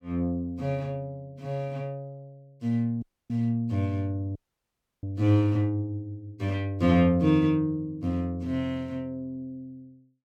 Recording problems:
dropout; at 3 s and at 4.5 s for 0.5 s

